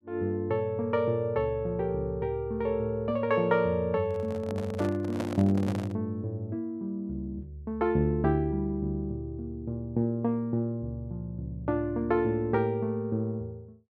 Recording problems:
microphone handling noise; from 4 to 6 s; peak -2 dB vs average level

